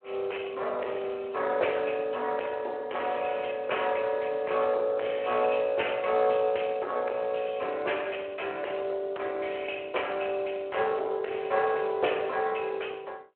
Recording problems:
phone line; 340 Hz to 3.3 kHz, Speex
distortion; soft clipping, signal-to-distortion ratio 12 dB

